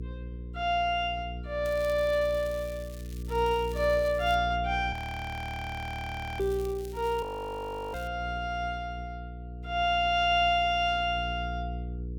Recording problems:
hum; 60 Hz, harmonics up to 480 Hz, SNR 11 dB
crackle; from 1.5 to 4.5 s and from 6.5 to 8 s; loose cable, SNR 22 dB
audio freezing; at 5 s for 1.5 s and at 7 s for 0.5 s

